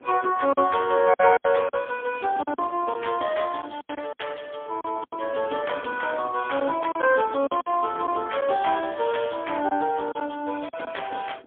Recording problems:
phone line; 220 Hz to 3.4 kHz, AMR-NB, then MP3
wind noise; below 550 Hz, SNR 20 dB
packet loss; 7% of the sound replaced, filled with silence

